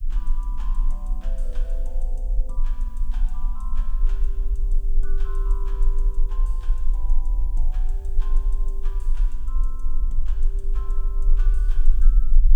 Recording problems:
background hiss; slope 0 dB per octave, SNR 18 dB
low-frequency rumble; below 34 Hz, strongest tone 18 Hz, SNR -20 dB

